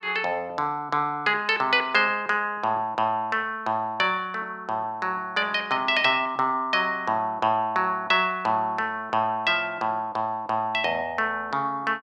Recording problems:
none

